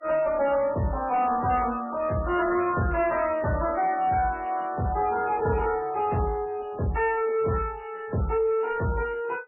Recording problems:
codec artefacts; MP3, log-spectral distance 4 dB, nothing above 2.5 kHz
distorted audio; soft clipping, signal-to-distortion ratio 11 dB

